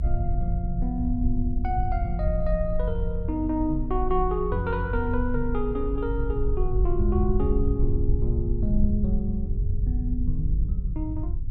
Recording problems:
rumble; below 70 Hz, strongest tone 20 Hz, SNR -1 dB

